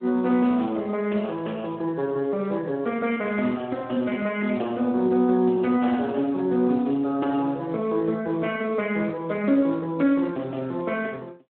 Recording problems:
phone line; 300 Hz to 2.9 kHz, Speex

